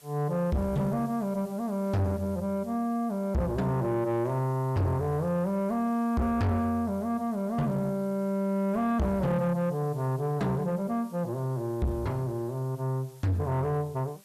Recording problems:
distortion; soft clipping, signal-to-distortion ratio 8 dB
hiss; slope 0 dB per octave, SNR 26 dB

